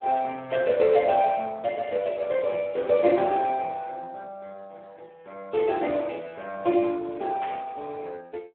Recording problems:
telephone audio; 260 Hz to 3.1 kHz, Speex
static burst; at 7.5 s; peak -8 dB vs average level

